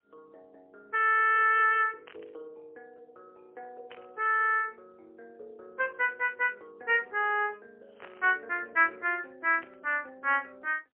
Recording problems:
telephone audio; 340 Hz to 3.3 kHz, AMR-NB, then MP3
burst of static; 4 times, first at 2 s; peak -14 dB vs average level

